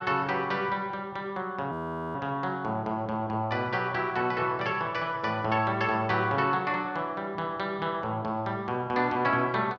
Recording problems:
frozen audio; at 1.5 s

